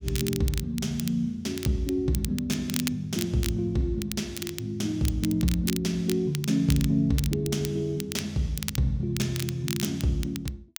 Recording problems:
crackling; vinyl, SNR 10 dB

